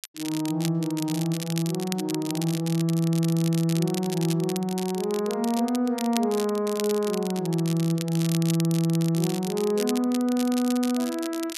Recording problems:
crackling; vinyl, SNR 11 dB

